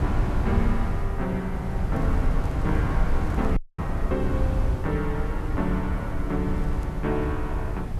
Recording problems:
background hiss; slope +2 dB per octave, SNR 28 dB
wind on the microphone; below 110 Hz, SNR -2 dB
crackling; from 2 to 3.5 s and at 6.5 s; loose cable, SNR 28 dB
audio cutting out; at 3.5 s

